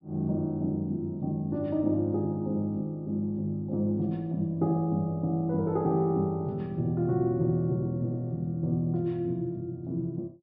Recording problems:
treble missing; nothing above 5.5 kHz

